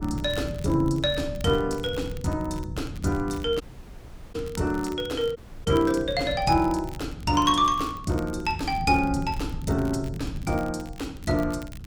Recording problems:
wind on the microphone; below 160 Hz, SNR 11 dB
crackling; vinyl, SNR 23 dB
audio cutting out; at 3.5 s for 0.5 s and at 5.5 s

